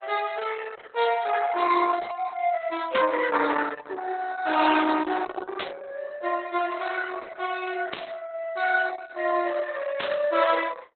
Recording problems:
lossy codec; Opus, log-spectral distance 5 dB, nothing above 4 kHz
static burst; 4 times, first at 3 s; peak +1 dB vs average level

